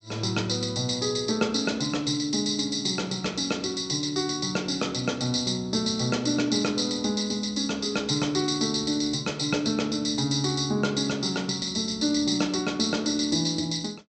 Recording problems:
low-pass filter; nothing above 8 kHz

